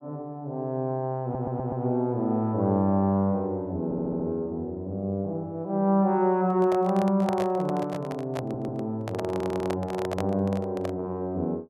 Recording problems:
audio stuttering; 4 times, first at 1 s
microphone handling noise; from 6.5 to 11 s; peak -1 dB vs average level

